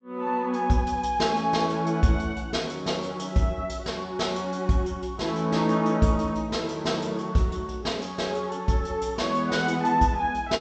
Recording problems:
low-pass filter; nothing above 8 kHz

